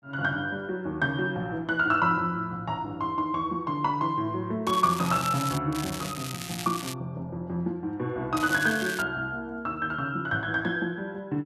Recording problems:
crackling; at 4.5 s, from 5.5 to 7 s and at 8.5 s; loose cable, SNR 9 dB

